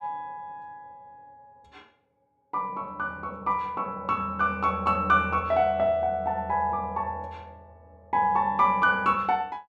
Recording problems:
none

